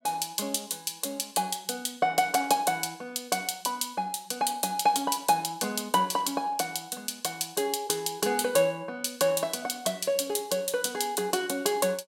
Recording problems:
none

